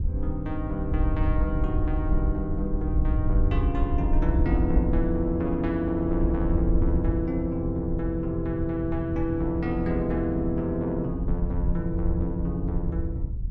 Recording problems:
wind noise; below 76 Hz, SNR 1 dB

